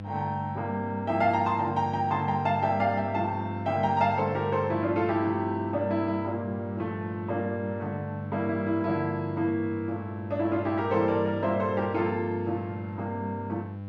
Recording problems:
mains hum; 50 Hz, harmonics up to 800 Hz, SNR 9 dB

